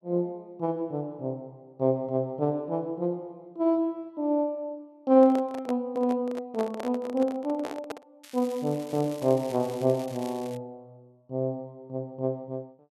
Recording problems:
microphone handling noise; from 5 to 8 s; peak -3 dB vs average level
crackle; from 8 to 11 s; loose cable, SNR 19 dB

